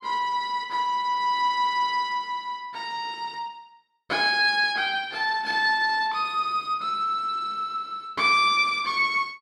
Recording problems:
none

